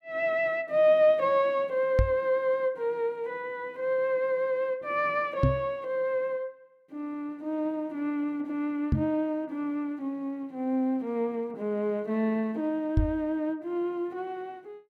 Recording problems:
microphone thump; 4 times, first at 2 s; peak +7 dB vs average level

